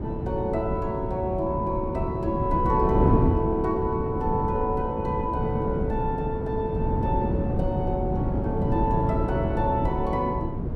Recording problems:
wind noise; below 270 Hz, SNR 0 dB

